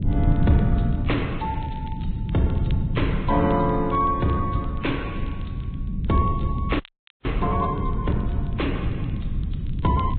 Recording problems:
treble cut off; nothing above 3.9 kHz
lossy codec; Vorbis, log-spectral distance 3 dB
low-frequency rumble; below 160 Hz, SNR 2 dB
crackle; vinyl, SNR 28 dB
frozen audio; at 7 s

